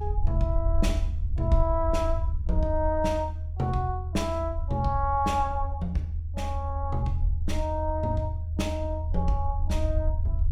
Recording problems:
rumble; below 80 Hz, SNR 0 dB

